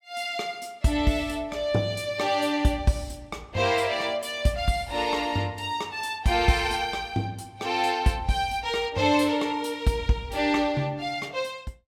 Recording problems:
none

